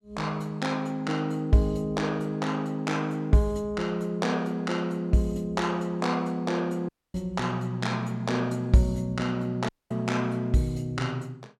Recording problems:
dropout; at 7 s and at 9.5 s

